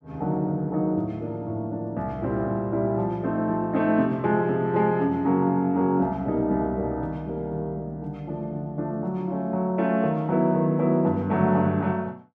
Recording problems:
none

